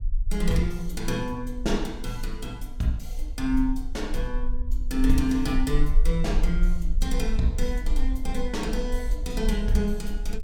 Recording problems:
low-frequency rumble; below 40 Hz, strongest tone 20 Hz, SNR 2 dB

